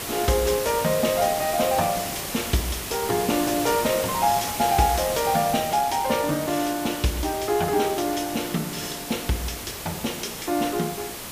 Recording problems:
background hiss; slope -2 dB per octave, SNR 6 dB

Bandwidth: 15 kHz